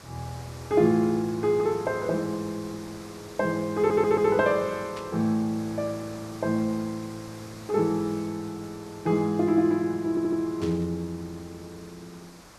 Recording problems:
hiss; SNR 19 dB
audio stuttering; at 4 s and at 10 s
burst of static; at 5 s and at 11 s; peak -12 dB vs average level

